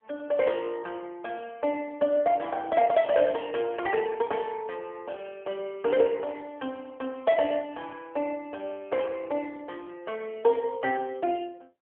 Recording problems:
telephone audio; 260 Hz to 3.3 kHz, AMR-NB

